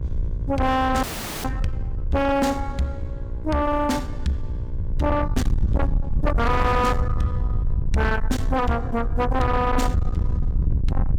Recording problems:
distortion; soft clipping, signal-to-distortion ratio 7 dB
hum; 60 Hz, harmonics up to 1.7 kHz, SNR 19 dB
rumble; below 96 Hz, SNR 3 dB
audio freezing; at 1 s

